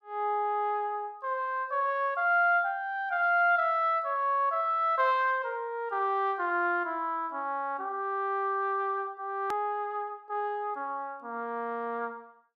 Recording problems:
hard cut with a click; at 9.5 s

